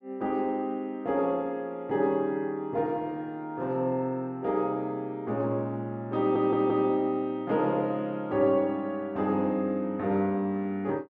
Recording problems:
stutter; at 6 s

